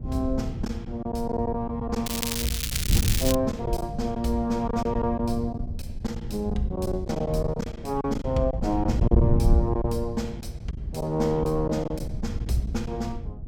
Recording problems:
wind noise; below 120 Hz, SNR 2 dB
lost packets; 8% of the sound replaced, filled with silence
crackle; from 2 to 3.5 s; loose cable, SNR 0 dB

